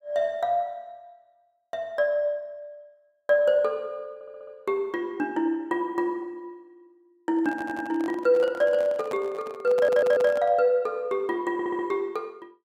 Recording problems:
audio stuttering; 4 times, first at 4 s
handling noise; from 7.5 to 11 s; peak -7 dB vs average level

